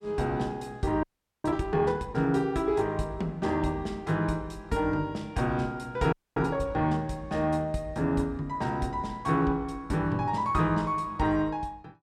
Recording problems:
audio freezing; at 1 s and at 6 s

